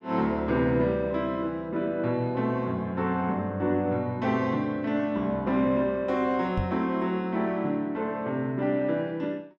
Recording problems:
knock on the microphone; at 6.5 s; peak +1 dB vs average level

